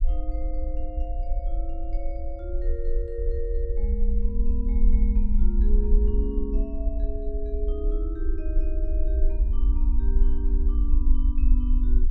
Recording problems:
rumble; below 48 Hz, SNR -9 dB

